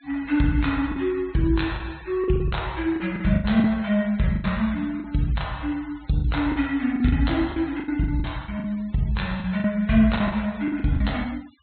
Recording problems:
treble cut off; nothing above 4.2 kHz
denoising artefacts; signal-to-artefact ratio 22 dB
lost packets; 11% of the sound replaced, filled with the last packet

